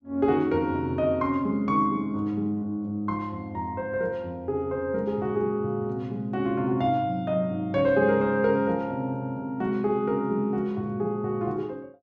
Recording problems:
none

